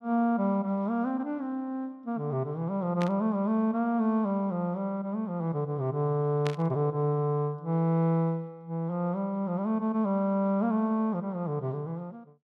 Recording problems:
burst of static; at 3 s and at 6.5 s; peak -4 dB vs average level

